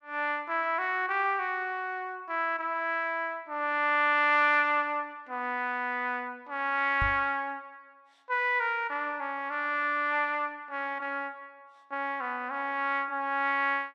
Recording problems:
microphone thump; at 7 s; peak -2 dB vs average level

